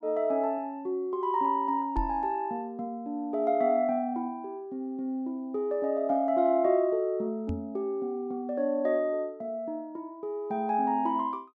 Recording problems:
knock on the microphone; at 2 s and at 7.5 s; peak -1 dB vs average level

